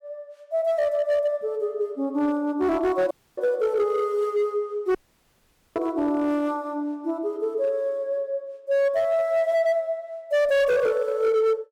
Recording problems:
distorted audio; hard clipping, signal-to-distortion ratio 11 dB
dropout; at 3 s and at 5 s for 1 s

